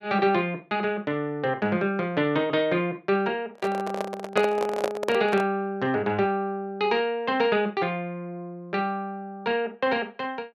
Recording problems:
microphone handling noise; from 3.5 to 5.5 s; peak +4 dB vs average level

